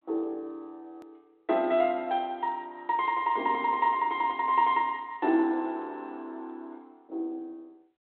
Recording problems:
telephone audio; 280 Hz to 3.8 kHz, G.726
click at an edit; at 1 s

